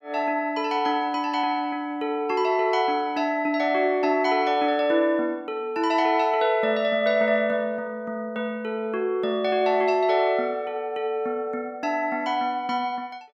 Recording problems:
none

